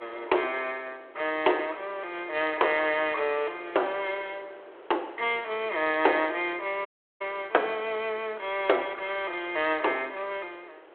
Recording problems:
telephone audio; 320 Hz to 3.7 kHz, G.726
wind on the microphone; below 1.1 kHz, SNR 21 dB
audio cutting out; at 7 s

